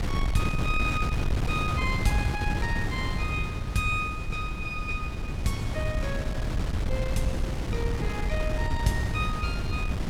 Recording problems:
wind on the microphone; below 160 Hz, SNR -1 dB

